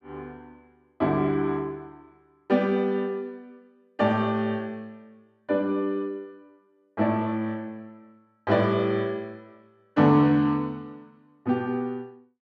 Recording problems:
none

